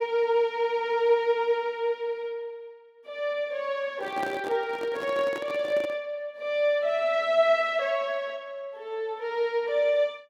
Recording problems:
microphone handling noise; from 4 to 6 s; peak -5 dB vs average level

